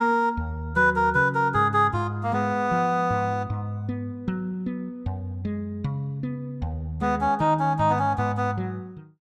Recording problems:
none

